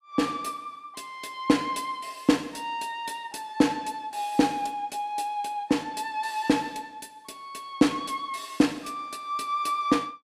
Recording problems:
none

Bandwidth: 15 kHz